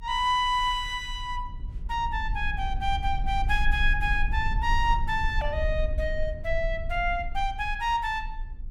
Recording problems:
rumble; below 52 Hz, SNR 6 dB

